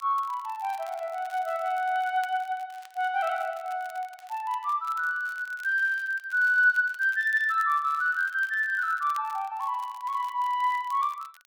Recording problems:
crackling; vinyl, SNR 26 dB

